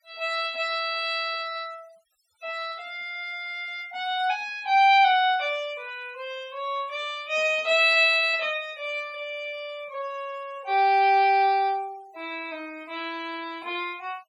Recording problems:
denoising artefacts; signal-to-artefact ratio 25 dB

